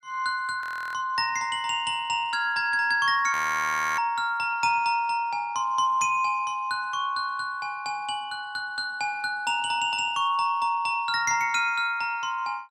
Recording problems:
frozen audio; at 0.5 s and at 3.5 s for 0.5 s

